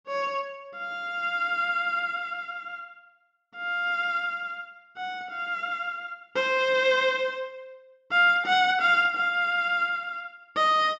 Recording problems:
none

